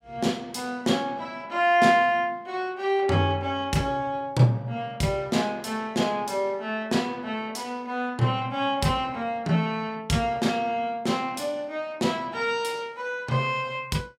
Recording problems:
none

